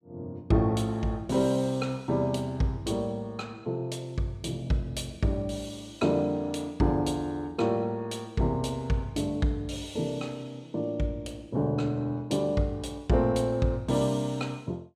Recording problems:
none

